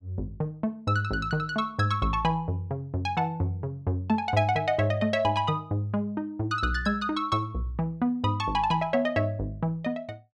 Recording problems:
none

